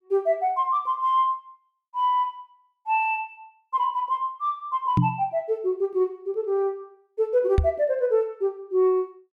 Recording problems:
microphone thump; at 5 s and at 7.5 s; peak +7 dB vs average level

